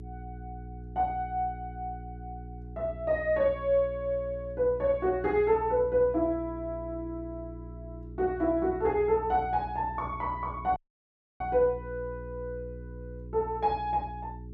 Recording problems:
electrical hum; 60 Hz, harmonics up to 420 Hz, SNR 14 dB
dropout; at 11 s for 0.5 s

